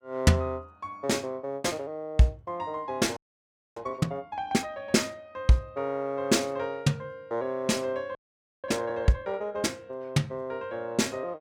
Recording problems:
frozen audio; at 3 s for 0.5 s and at 8 s

